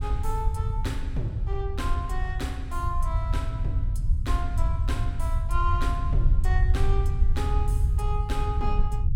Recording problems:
low-frequency rumble; below 78 Hz, SNR -7 dB

